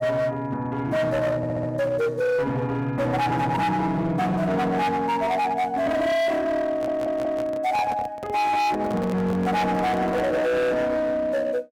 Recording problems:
distortion; hard clipping, signal-to-distortion ratio 8 dB
stutter; at 1.5 s and at 6.5 s
handling noise; from 6.5 to 10 s; peak -5 dB vs average level

